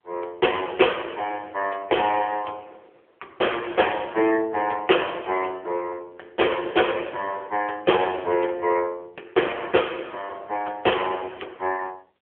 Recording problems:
telephone audio; 300 Hz to 3.4 kHz, AMR-NB

